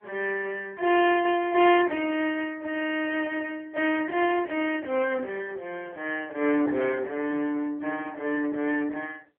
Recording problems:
phone line; 300 Hz to 3.5 kHz, AMR-NB

